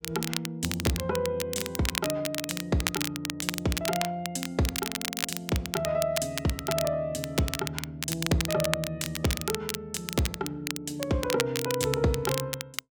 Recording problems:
crackle; vinyl, SNR 3 dB

